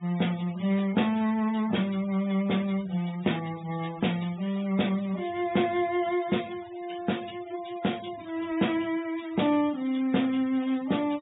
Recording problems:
treble cut off; nothing above 4 kHz
noise reduction artefacts; signal-to-artefact ratio 19 dB

